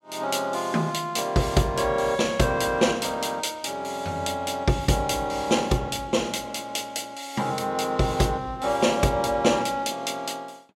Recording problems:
none

